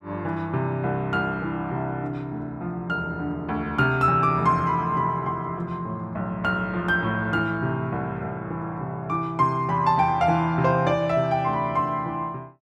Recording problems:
none

